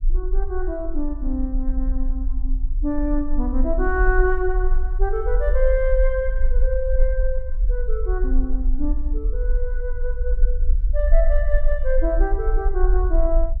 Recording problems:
low-frequency rumble; below 44 Hz, strongest tone 22 Hz, SNR -2 dB

